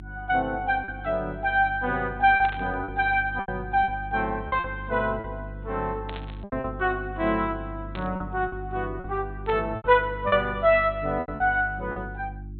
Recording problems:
treble missing; nothing above 4 kHz
electrical hum; 50 Hz, harmonics up to 350 Hz, SNR 13 dB
packet loss; 7% of the sound replaced, filled with repeated pitch periods
burst of static; 4 times, first at 2.5 s; peak -8 dB vs average level

